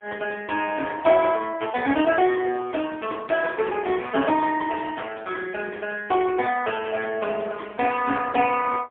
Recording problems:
telephone audio; 260 Hz to 3.3 kHz, AMR-NB, then MP3

